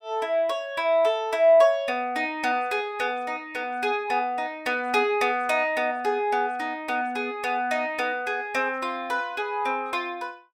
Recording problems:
none

